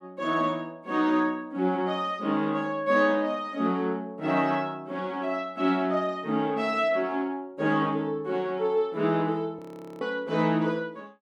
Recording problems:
frozen audio; at 9.5 s

